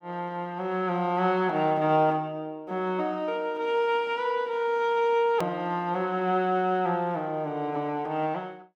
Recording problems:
hard cut with a click; at 5.5 s

